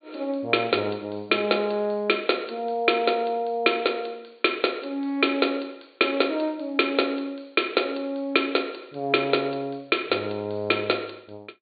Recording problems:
treble cut off; nothing above 4.5 kHz

